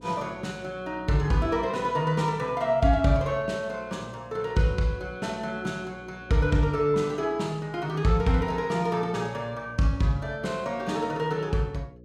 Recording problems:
hum; 60 Hz, harmonics up to 540 Hz, SNR 24 dB

